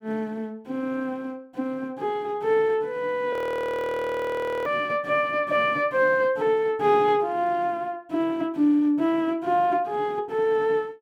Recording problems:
audio freezing; at 3.5 s for 1.5 s

